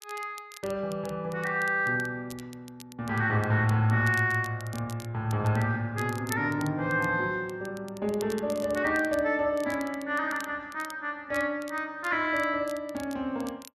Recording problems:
crackle; vinyl, SNR 20 dB

